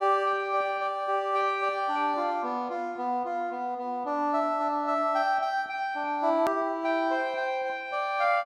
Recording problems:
click at an edit; at 6.5 s

